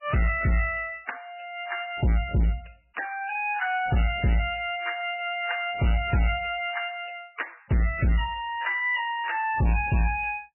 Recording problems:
lossy compression; MP3, log-spectral distance 7 dB, nothing above 2.5 kHz
distorted audio; hard clipping, signal-to-distortion ratio 9 dB

